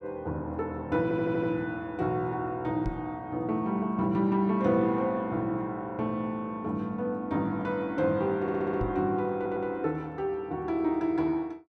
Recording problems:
audio stuttering; at 1 s, at 8.5 s and at 9.5 s
microphone bump; at 3 s and at 9 s; peak -1 dB vs average level

